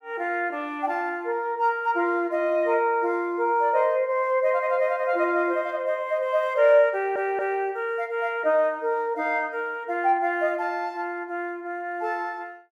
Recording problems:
stutter; at 7 s

